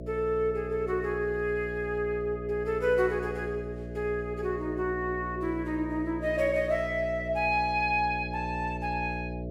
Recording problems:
electrical hum; 60 Hz, harmonics up to 660 Hz, SNR 9 dB

